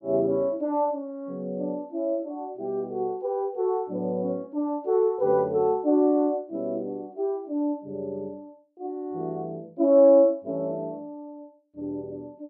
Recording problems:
none

